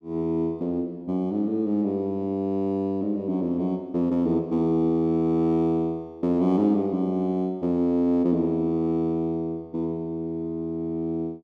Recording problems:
none

